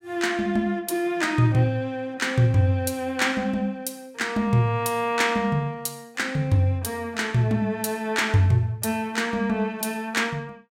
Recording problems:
none

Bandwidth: 16.5 kHz